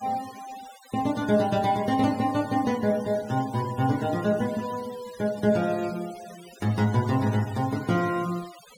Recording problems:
noise reduction artefacts; signal-to-artefact ratio 18 dB

